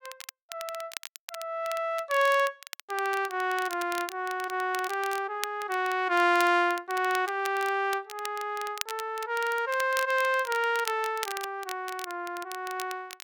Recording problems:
crackling; vinyl, SNR 13 dB

